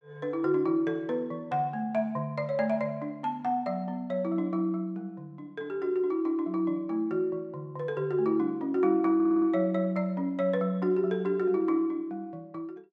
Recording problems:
stutter; at 9 s

